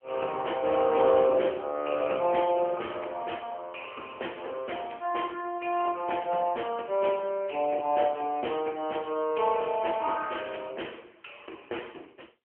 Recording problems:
telephone audio; 280 Hz to 3.1 kHz, AMR-NB

